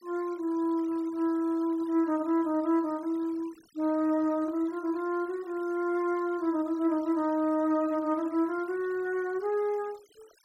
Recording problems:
denoising artefacts; signal-to-artefact ratio 26 dB

